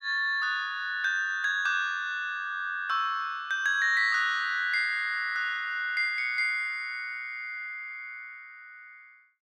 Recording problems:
none

